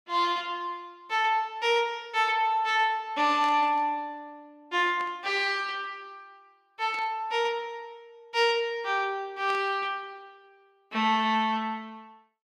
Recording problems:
static burst; 4 times, first at 3.5 s; peak -11 dB vs average level

